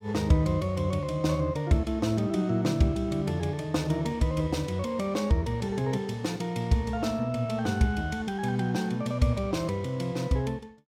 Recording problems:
none

